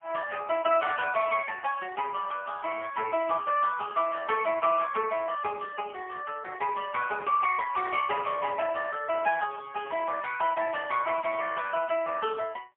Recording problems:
telephone audio; 260 Hz to 3 kHz, AMR-NB, then MP3

